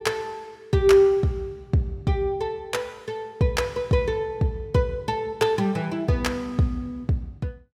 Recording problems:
none

